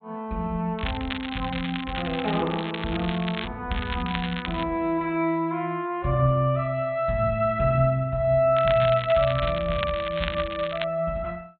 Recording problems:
low-pass filter; nothing above 4 kHz
crackling; from 1 to 3.5 s, at 3.5 s and from 8.5 to 11 s; loose cable, SNR 10 dB

